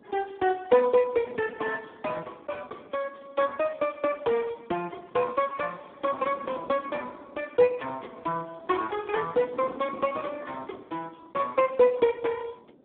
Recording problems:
telephone audio; 190 Hz to 2.3 kHz, Speex
wind on the microphone; below 500 Hz, SNR 21 dB

